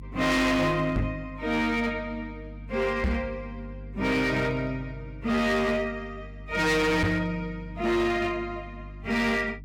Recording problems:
distorted audio; hard clipping, signal-to-distortion ratio 8 dB
electrical hum; 50 Hz, harmonics up to 300 Hz, SNR 16 dB
microphone thump; at 1 s, at 3 s and at 7 s; peak +4 dB vs average level

